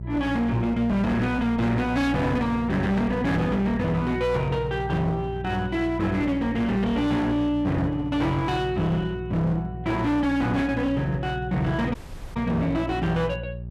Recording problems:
distortion; hard clipping, uneven, signal-to-distortion ratio 6 dB
hum; 60 Hz, harmonics up to 420 Hz, SNR 10 dB
audio cutting out; at 12 s

